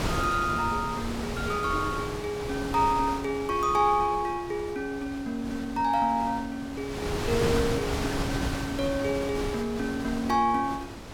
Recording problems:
wind noise; below 1.3 kHz, SNR 6 dB

